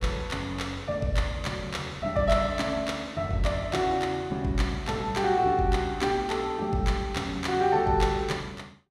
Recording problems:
none

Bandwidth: 15.5 kHz